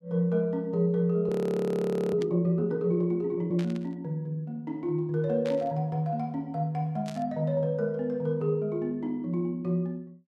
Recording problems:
audio freezing; at 1.5 s for 1 s
static burst; 4 times, first at 2 s; peak -10 dB vs average level

